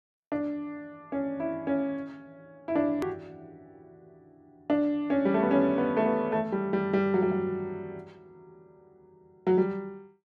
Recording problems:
hard cut with a click; at 3 s

